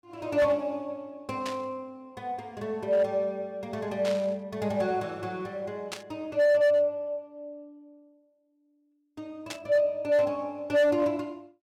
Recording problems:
distortion; hard clipping, signal-to-distortion ratio 12 dB
static burst; 4 times, first at 1.5 s; peak -3 dB vs average level

